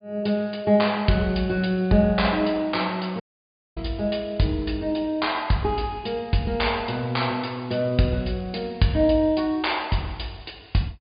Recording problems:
treble missing; nothing above 4.9 kHz
audio cutting out; at 3 s for 0.5 s

